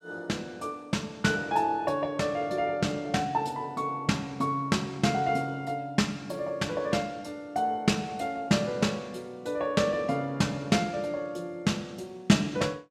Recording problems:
none

